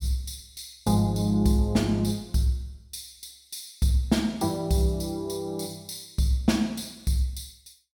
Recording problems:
none

